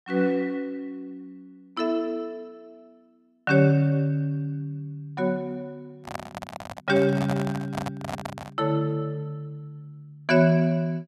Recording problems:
handling noise; from 6 to 8.5 s; peak -2 dB vs average level

